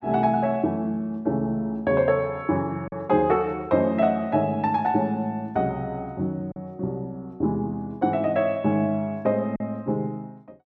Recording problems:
packet loss; 1.2% of the sound replaced, filled with silence

